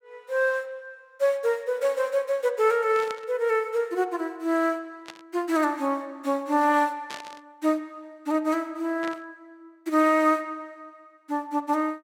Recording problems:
burst of static; 4 times, first at 3 s; peak -8 dB vs average level

